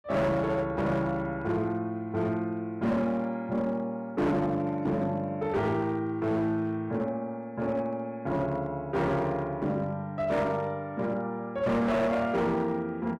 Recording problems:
distorted audio; hard clipping, signal-to-distortion ratio 10 dB

